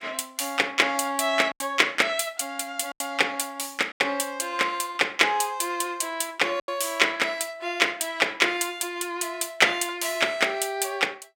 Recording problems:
lost packets; 3% of the sound replaced, filled with silence

